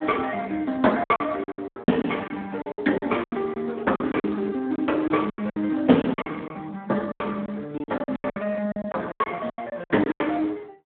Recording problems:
telephone audio; 190 Hz to 3.4 kHz, Speex
lost packets; 17% of the sound replaced, filled with silence

